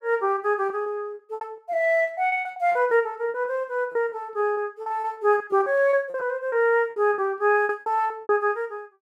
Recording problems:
lost packets; 15% of the sound replaced, filled with repeated pitch periods

